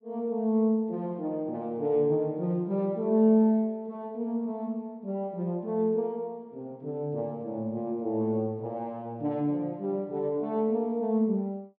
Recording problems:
none

